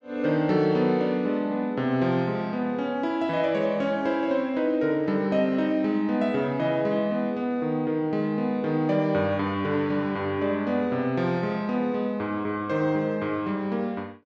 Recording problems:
none

